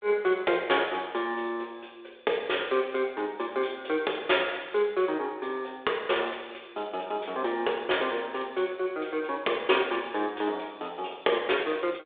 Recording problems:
phone line; 320 Hz to 3.6 kHz, G.726

